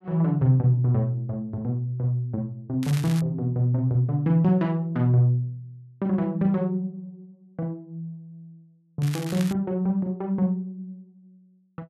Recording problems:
crackle; at 3 s and at 9 s; loose cable, SNR 15 dB

